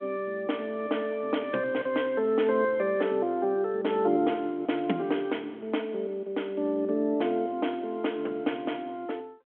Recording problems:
telephone audio; 240 Hz to 3.4 kHz, G.726

